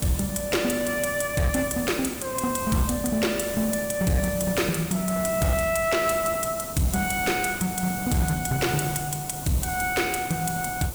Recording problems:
distorted audio; hard clipping, uneven, signal-to-distortion ratio 11 dB
background hiss; SNR 8 dB

